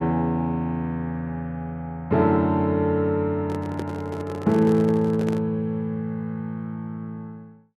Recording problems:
microphone handling noise; from 3.5 to 5.5 s; peak -4 dB vs average level

